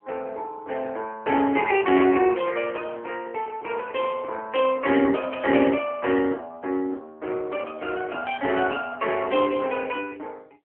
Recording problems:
phone line; 240 Hz to 3.1 kHz, AMR-NB

